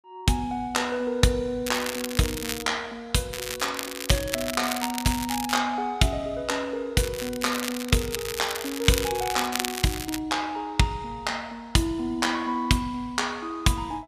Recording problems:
crackle; at 1.5 s, from 3.5 to 5.5 s and from 7 to 10 s; loose cable, SNR 6 dB

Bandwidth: 14.5 kHz